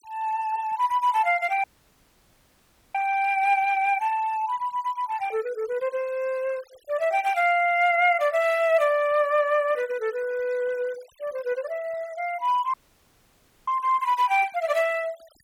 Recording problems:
noise reduction artefacts; signal-to-artefact ratio 23 dB
dropout; at 1.5 s for 1.5 s and at 13 s for 1 s

